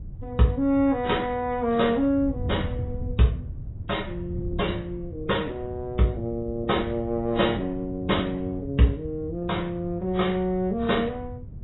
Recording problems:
lossy compression; AAC, log-spectral distance 2 dB, nothing above 3.9 kHz
wind noise; below 120 Hz, SNR 11 dB

